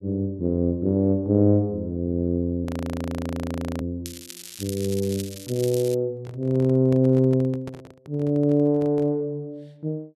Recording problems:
frozen audio; at 2.5 s for 1 s
crackle; from 4 to 6 s; loose cable, SNR 14 dB
microphone handling noise; from 6 to 9 s; peak -10 dB vs average level

